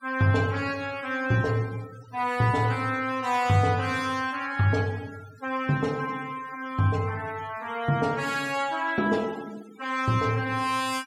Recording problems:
denoising artefacts; signal-to-artefact ratio 21 dB

